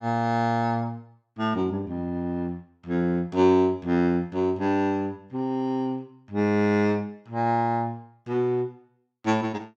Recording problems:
none

